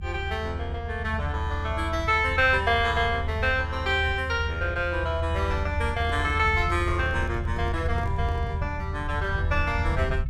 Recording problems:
low-frequency rumble; below 82 Hz, strongest tone 80 Hz, SNR 4 dB
handling noise; from 6 to 8.5 s; peak -10 dB vs average level

